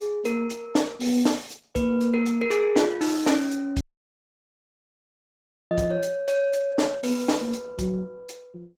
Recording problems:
codec artefacts; Opus, log-spectral distance 4 dB
dropout; at 4 s for 2 s

